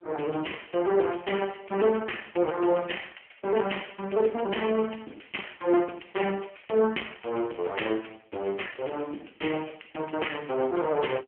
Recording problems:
telephone audio; 280 Hz to 3.2 kHz, AMR-NB

